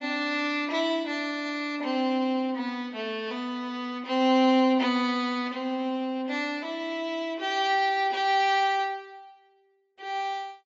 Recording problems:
lossy compression; AAC, log-spectral distance 2 dB, nothing above 6.7 kHz

